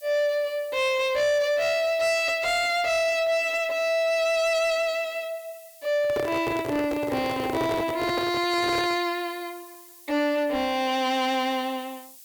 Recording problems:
distortion; soft clipping, signal-to-distortion ratio 10 dB
hiss; SNR 23 dB
microphone handling noise; from 6 to 9 s; peak -1 dB vs average level

